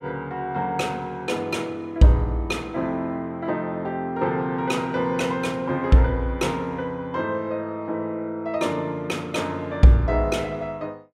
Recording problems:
none

